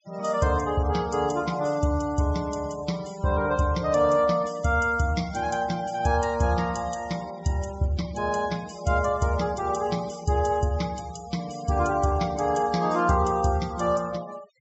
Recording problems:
treble missing; nothing above 7.6 kHz
denoising artefacts; signal-to-artefact ratio 20 dB

